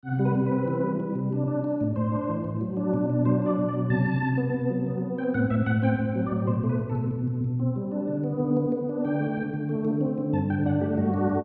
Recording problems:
none

